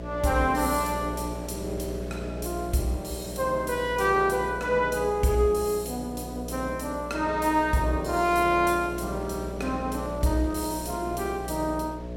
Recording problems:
electrical hum; 60 Hz, harmonics up to 660 Hz, SNR 10 dB
wind noise; below 1.7 kHz, SNR 22 dB

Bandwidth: 16.5 kHz